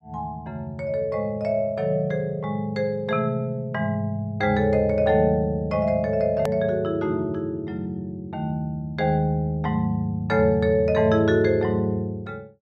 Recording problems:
click at an edit; at 6.5 s

